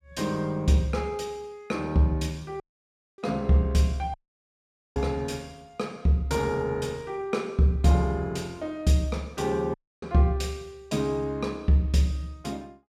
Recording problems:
audio cutting out; at 2.5 s for 0.5 s, at 4 s for 1 s and at 9.5 s

